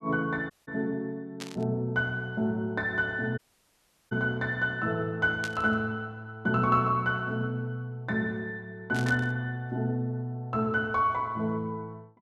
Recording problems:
dropout; at 0.5 s and at 3.5 s for 0.5 s
burst of static; at 1.5 s, at 5.5 s and at 9 s; peak -4 dB vs average level

